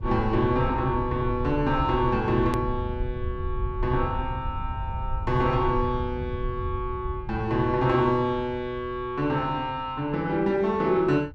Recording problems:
rumble; below 92 Hz, SNR 8 dB
hard cut with a click; at 2.5 s

